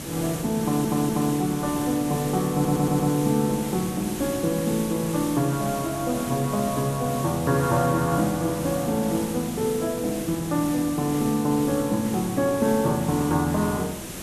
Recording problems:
background hiss; SNR 9 dB
audio stuttering; at 0.5 s and at 2.5 s

